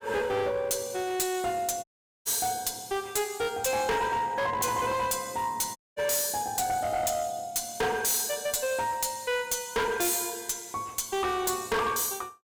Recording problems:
distorted audio; hard clipping, uneven, signal-to-distortion ratio 6 dB
dropout; at 2 s and at 6 s

